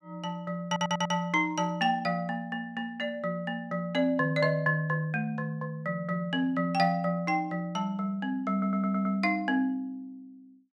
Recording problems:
audio stuttering; at 0.5 s and at 8.5 s

